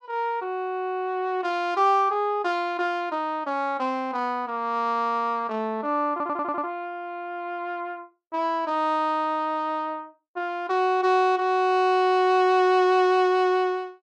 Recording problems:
stutter; at 6 s

